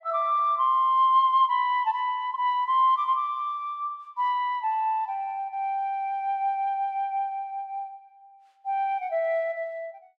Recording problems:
none

